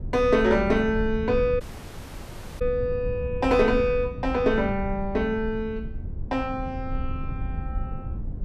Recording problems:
low-frequency rumble; below 100 Hz, SNR 9 dB
audio cutting out; at 1.5 s for 1 s

